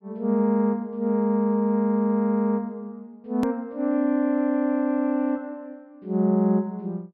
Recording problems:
treble missing; nothing above 5.5 kHz
click at an edit; at 3.5 s

